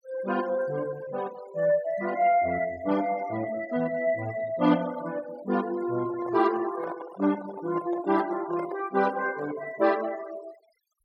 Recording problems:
denoising artefacts; signal-to-artefact ratio 18 dB
microphone handling noise; from 6 to 9.5 s; peak -6 dB vs average level

